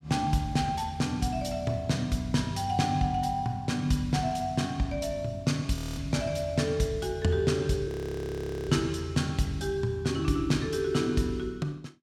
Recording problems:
audio freezing; at 6 s and at 8 s for 1 s

